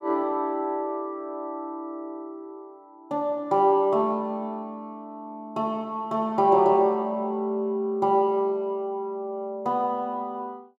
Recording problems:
none

